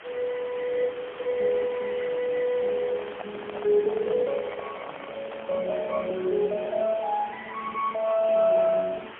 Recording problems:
phone line; 300 Hz to 2.2 kHz, AMR-NB, then MP3
hiss; SNR 15 dB
handling noise; from 2.5 to 6 s; peak -5 dB vs average level

